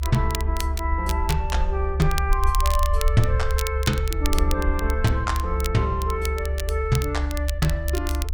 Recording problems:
rumble; below 72 Hz, SNR 0 dB
crackle; vinyl, SNR 9 dB

